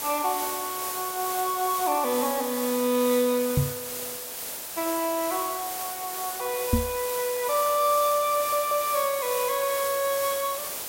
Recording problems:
hiss; slope -2 dB per octave, SNR 5 dB
microphone thump; at 3.5 s and at 6.5 s; peak +7 dB vs average level
stutter; at 4 s and at 8.5 s

